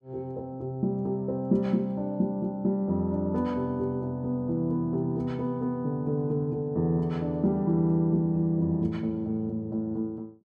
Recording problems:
none

